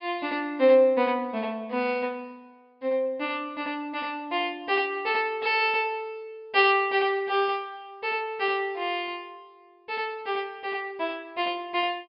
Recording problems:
treble cut off; nothing above 5.5 kHz

